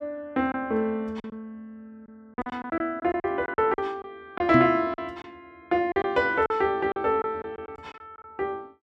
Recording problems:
lost packets; 10% of the sound replaced, filled with silence
microphone bump; at 4.5 s; peak +6 dB vs average level

